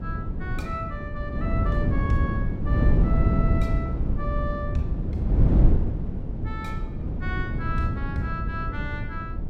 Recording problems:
wind noise; below 150 Hz, SNR -7 dB

